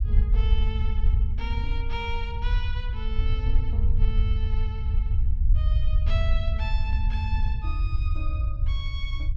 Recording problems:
rumble; below 68 Hz, SNR -11 dB

